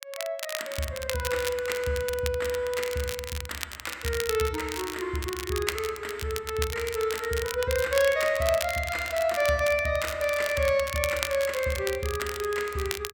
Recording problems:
crackle; vinyl, SNR 8 dB

